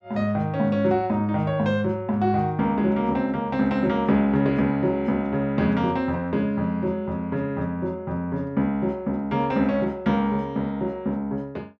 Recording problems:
none

